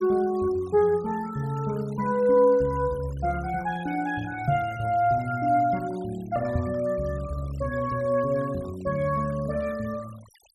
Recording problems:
denoising artefacts; signal-to-artefact ratio 23 dB
microphone thump; at 4.5 s and at 6.5 s; peak +3 dB vs average level

